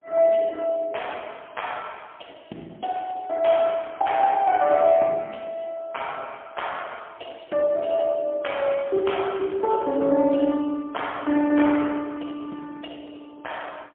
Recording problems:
telephone audio; 220 Hz to 3.3 kHz, AMR-NB, then MP3

